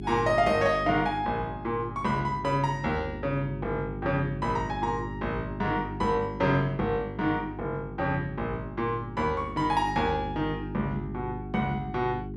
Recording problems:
hum; 50 Hz, harmonics up to 400 Hz, SNR 9 dB

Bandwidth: 12 kHz